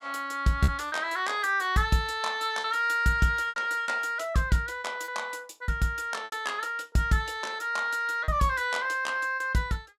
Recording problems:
packet loss; 5% of the sound replaced, filled with repeated pitch periods

